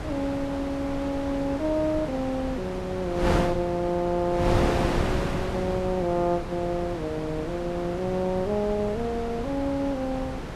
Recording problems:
wind noise; below 810 Hz, SNR 4 dB

